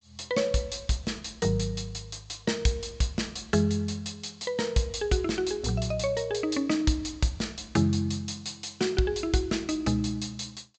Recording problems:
treble cut off; nothing above 8 kHz

